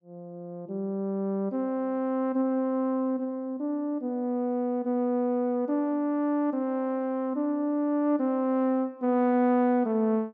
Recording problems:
none

